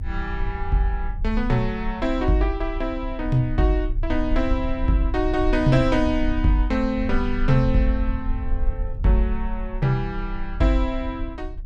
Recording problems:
rumble; below 52 Hz, SNR 7 dB

